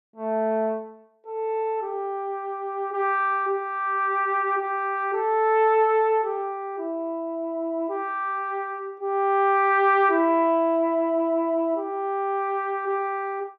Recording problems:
none

